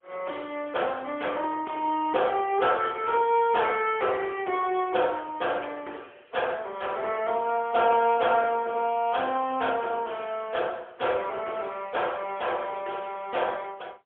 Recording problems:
phone line; 340 Hz to 3.3 kHz, AMR-NB, then MP3

